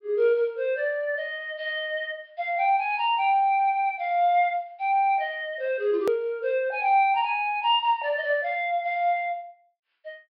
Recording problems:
treble cut off; nothing above 5.4 kHz
edit click; at 6 s

